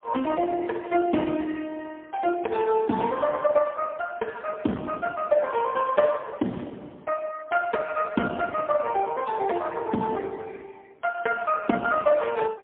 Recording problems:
phone line; 190 Hz to 3.6 kHz, AMR-NB, then MP3

